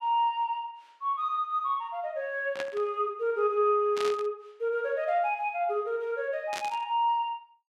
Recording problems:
burst of static; at 2.5 s, at 4 s and at 6.5 s; peak -3 dB vs average level

